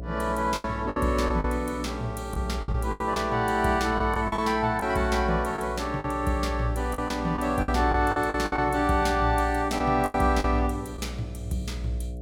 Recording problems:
electrical hum; 60 Hz, harmonics up to 720 Hz, SNR 12 dB
lost packets; 9% of the sound replaced, filled with the last packet

